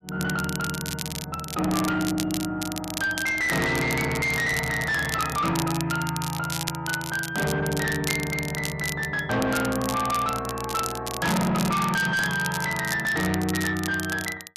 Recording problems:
distorted audio; soft clipping, signal-to-distortion ratio 8 dB
crackling; vinyl, SNR 8 dB

